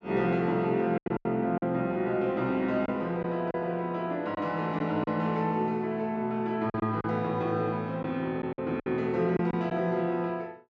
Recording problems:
lost packets; 6% of the sound replaced, filled with silence

